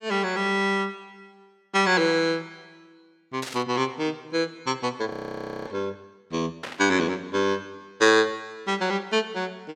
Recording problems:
static burst; at 3.5 s and at 6.5 s; peak -4 dB vs average level
frozen audio; at 5 s for 0.5 s

